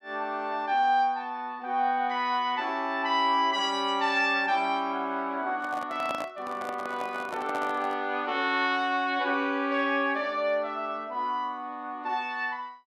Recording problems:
handling noise; from 5.5 to 8 s; peak -3 dB vs average level

